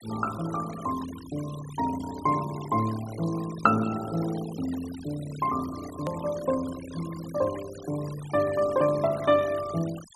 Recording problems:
noise reduction artefacts; signal-to-artefact ratio 16 dB
edit click; at 6 s

